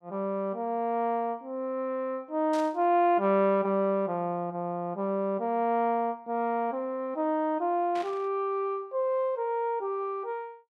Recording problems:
burst of static; at 2.5 s and at 8 s; peak -11 dB vs average level

